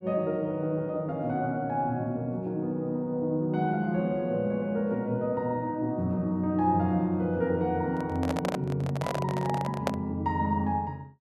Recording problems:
microphone handling noise; from 8 to 10 s; peak +4 dB vs average level

